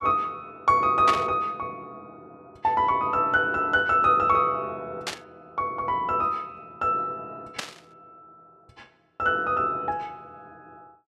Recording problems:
static burst; at 1 s, at 5 s and at 7.5 s; peak 0 dB vs average level

